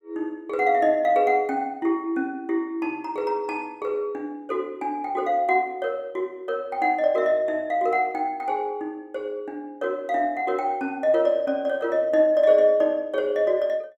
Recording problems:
none

